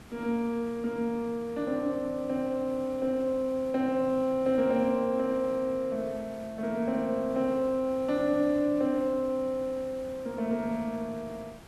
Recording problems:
background hiss; slope -5 dB per octave, SNR 20 dB

